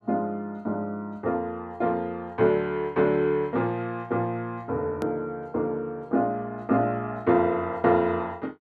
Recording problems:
edit click; at 5 s

